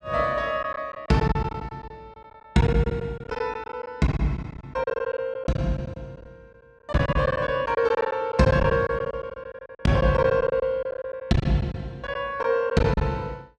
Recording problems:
packet loss; 13% of the sound replaced, filled with silence

